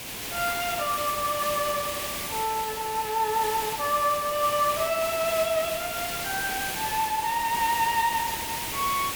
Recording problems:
background hiss; SNR 4 dB

